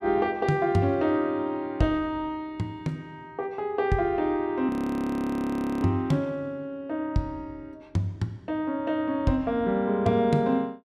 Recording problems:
frozen audio; at 4.5 s for 1 s

